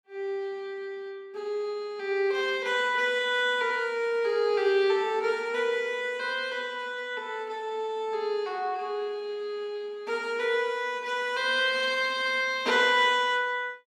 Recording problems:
none

